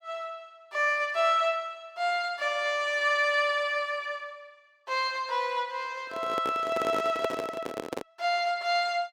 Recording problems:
handling noise; from 6 to 8 s; peak +1 dB vs average level

